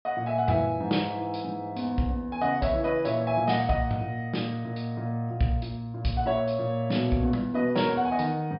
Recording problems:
treble cut off; nothing above 5.5 kHz

